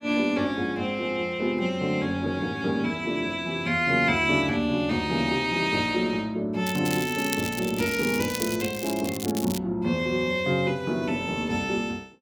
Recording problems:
crackle; from 6.5 to 9.5 s; loose cable, SNR 10 dB

